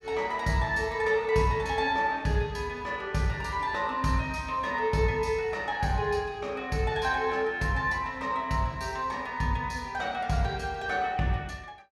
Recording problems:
none

